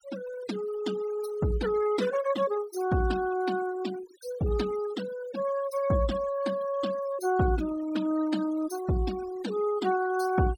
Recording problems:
denoising artefacts; signal-to-artefact ratio 15 dB

